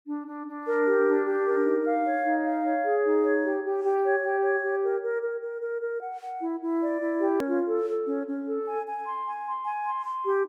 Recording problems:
hard cut with a click; at 7.5 s

